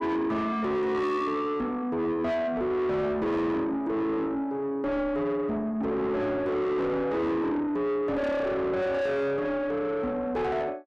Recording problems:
distorted audio; soft clipping, signal-to-distortion ratio 7 dB

